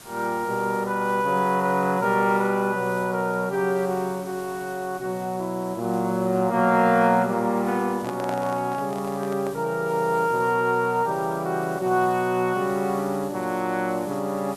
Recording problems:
hiss; slope -3 dB per octave, SNR 21 dB
handling noise; from 8 to 9.5 s; peak -6 dB vs average level

